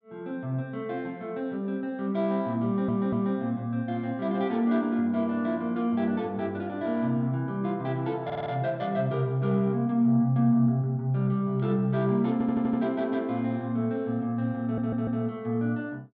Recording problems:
stutter; 4 times, first at 2.5 s

